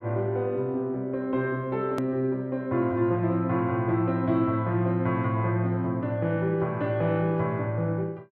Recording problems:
hard cut with a click; at 2 s

